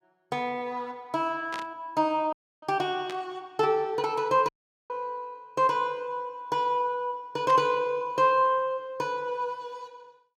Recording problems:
burst of static; at 1.5 s, at 3 s and at 7.5 s; peak -6 dB vs average level
dropout; at 2.5 s and at 4.5 s

